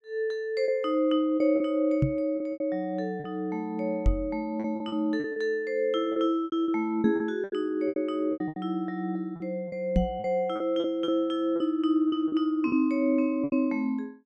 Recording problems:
packet loss; 11% of the sound replaced, filled with repeated pitch periods
microphone bump; 4 times, first at 2 s; peak +6 dB vs average level

